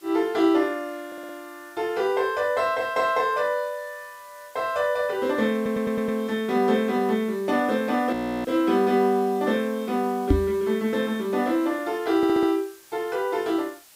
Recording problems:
background hiss; slope +1 dB per octave, SNR 25 dB
audio stuttering; at 1 s, at 5.5 s and at 12 s
audio freezing; at 8 s
microphone bump; at 10 s; peak +8 dB vs average level

